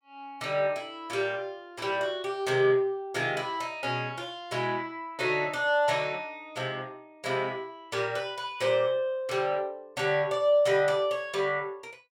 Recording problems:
none

